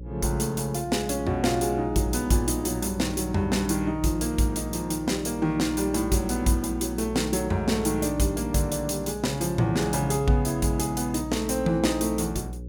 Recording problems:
hum; 60 Hz, harmonics up to 540 Hz, SNR 12 dB

